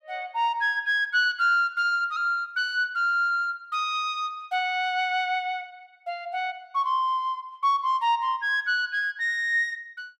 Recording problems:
none

